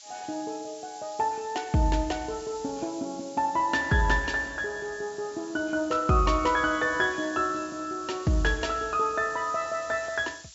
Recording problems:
treble missing; nothing above 8 kHz
hiss; slope +5 dB per octave, SNR 18 dB

